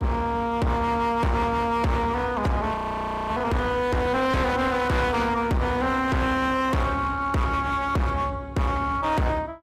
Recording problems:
lossy compression; AAC, log-spectral distance 2 dB, nothing above 15.1 kHz
distortion; hard clipping, uneven, signal-to-distortion ratio 7 dB
audio freezing; at 2.5 s for 0.5 s

